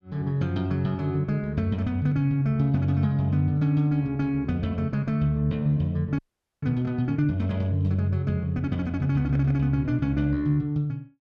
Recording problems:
frozen audio; at 6 s

